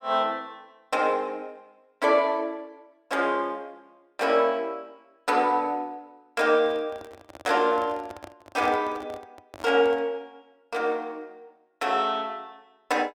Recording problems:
microphone handling noise; from 6.5 to 10 s; peak -8 dB vs average level

